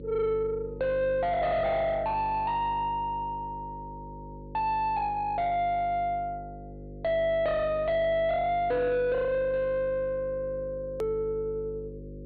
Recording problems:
treble cut off; nothing above 4.5 kHz
distorted audio; soft clipping, signal-to-distortion ratio 7 dB
electrical hum; 50 Hz, harmonics up to 550 Hz, SNR 15 dB
hard cut with a click; at 11 s

